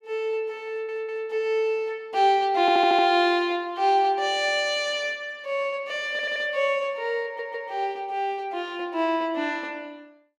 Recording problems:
stutter; 4 times, first at 0.5 s

